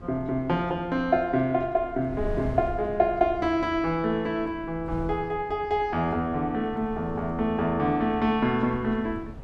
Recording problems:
wind noise; below 130 Hz, SNR 16 dB

